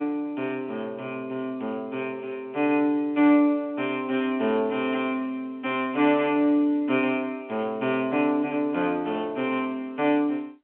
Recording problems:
telephone audio; 240 Hz to 3.4 kHz, G.711

